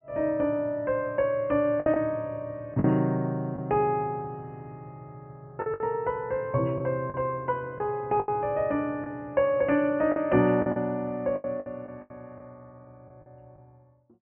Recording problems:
treble missing; nothing above 3.1 kHz
lost packets; 7% of the sound replaced, filled with the last packet

